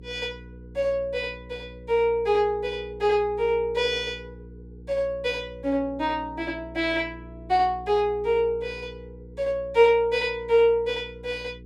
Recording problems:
electrical hum; 60 Hz, harmonics up to 480 Hz, SNR 19 dB

